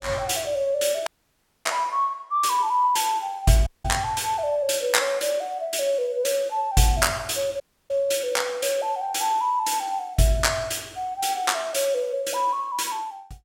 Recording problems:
dropout; at 1 s for 0.5 s, at 3.5 s and at 7.5 s

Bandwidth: 17 kHz